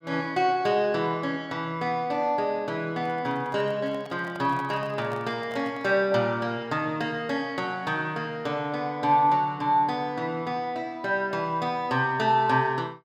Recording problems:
handling noise; from 3 to 6 s; peak -10 dB vs average level

